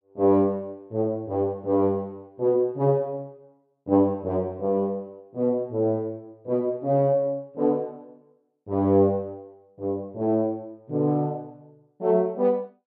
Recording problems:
none

